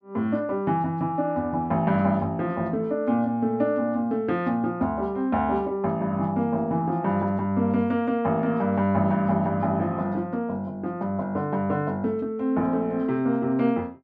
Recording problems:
none

